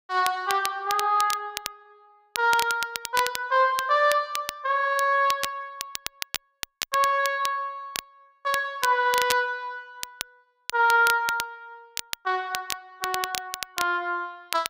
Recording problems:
crackle; vinyl, SNR 9 dB

